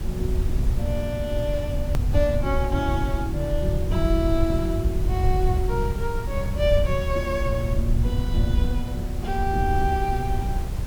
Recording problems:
background hiss; slope -5 dB per octave, SNR 14 dB
rumble; below 88 Hz, SNR -1 dB
edit click; at 2 s

